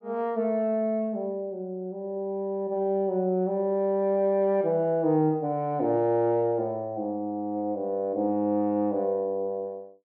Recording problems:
none

